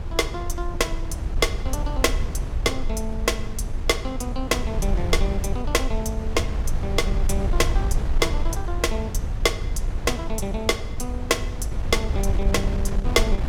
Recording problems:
wind on the microphone; below 74 Hz, SNR 1 dB

